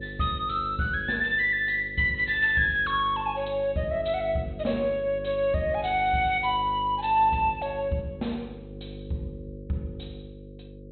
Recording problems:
low-pass filter; nothing above 4.2 kHz
electrical hum; 50 Hz, harmonics up to 550 Hz, SNR 15 dB

